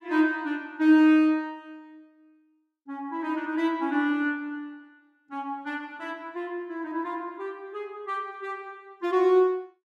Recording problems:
none

